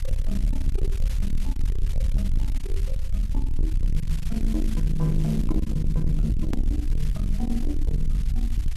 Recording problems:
distortion; soft clipping, signal-to-distortion ratio 8 dB
electrical hum; 50 Hz, harmonics up to 600 Hz, SNR 24 dB
hiss; slope +1 dB per octave, SNR 15 dB
rumble; below 56 Hz, strongest tone 20 Hz, SNR -2 dB
edit click; at 6.5 s

